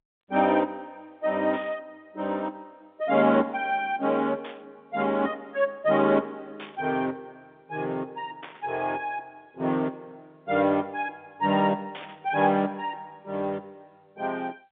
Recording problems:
phone line; 150 Hz to 3.7 kHz, G.711
static burst; 5 times, first at 1.5 s; peak -9 dB vs average level

